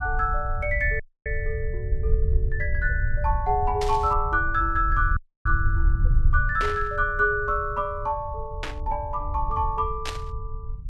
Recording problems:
low-frequency rumble; below 72 Hz, SNR 3 dB
audio cutting out; at 1 s and at 5 s
static burst; 4 times, first at 4 s; peak -1 dB vs average level

